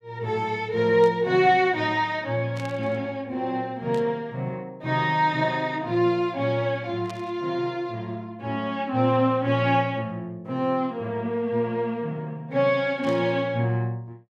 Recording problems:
static burst; 5 times, first at 1 s; peak -13 dB vs average level

